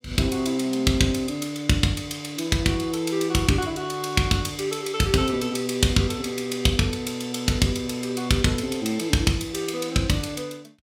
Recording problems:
none

